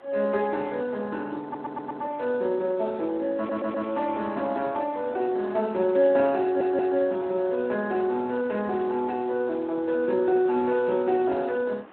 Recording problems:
telephone audio; 220 Hz to 3.4 kHz, Speex
hiss; SNR 24 dB
wind on the microphone; below 1.4 kHz, SNR 25 dB
stutter; at 1.5 s, at 3.5 s and at 6.5 s

